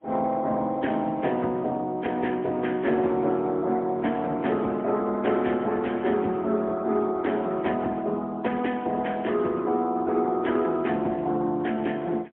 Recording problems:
phone line; 170 Hz to 3.3 kHz, AMR-NB, then MP3

